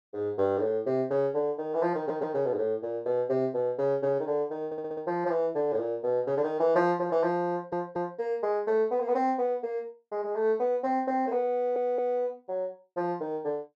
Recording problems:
audio stuttering; 4 times, first at 2 s

